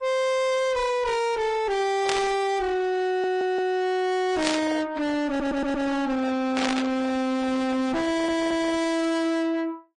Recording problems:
codec artefacts; AAC, then MP3, log-spectral distance 2 dB, nothing above 9 kHz
distortion; soft clipping, signal-to-distortion ratio 3 dB
static burst; at 2 s, at 4.5 s and at 6.5 s; peak +3 dB vs average level
stutter; at 3 s, at 5.5 s and at 8 s

